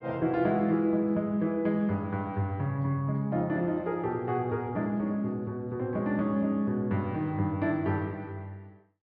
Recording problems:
treble cut off; nothing above 5.5 kHz

